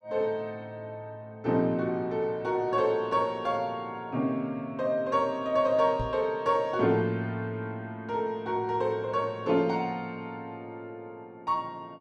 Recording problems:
knock on the microphone; at 6 s; peak -2 dB vs average level

